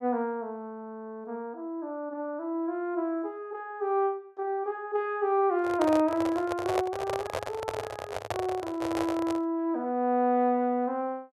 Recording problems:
microphone handling noise; from 5.5 to 9.5 s; peak +4 dB vs average level

